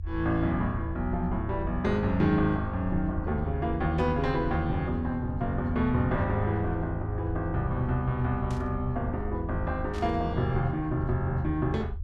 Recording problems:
low-frequency rumble; below 80 Hz, strongest tone 78 Hz, SNR 7 dB
static burst; at 4 s, at 8.5 s and at 10 s; peak -13 dB vs average level

